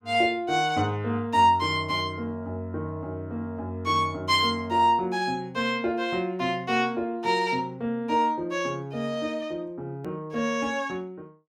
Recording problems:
edit click; at 10 s

